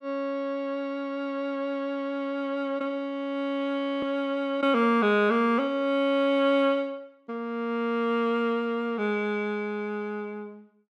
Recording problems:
audio freezing; at 4 s

